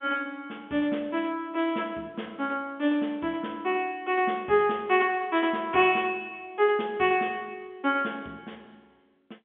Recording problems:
phone line; 170 Hz to 3.5 kHz, G.711

